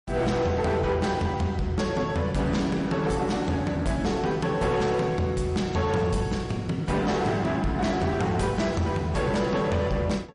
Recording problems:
lossy codec; MP3, log-spectral distance 2 dB, nothing above 10.4 kHz
distorted audio; hard clipping, signal-to-distortion ratio 11 dB

